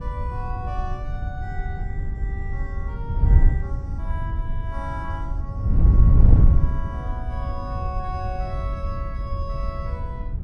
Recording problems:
wind noise; below 90 Hz, SNR -12 dB

